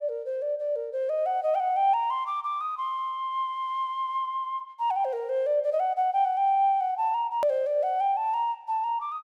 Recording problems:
click at an edit; at 7.5 s

